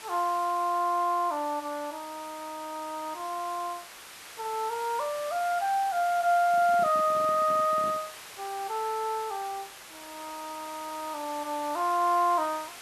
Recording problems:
background hiss; SNR 15 dB
microphone handling noise; from 6.5 to 8 s; peak -11 dB vs average level

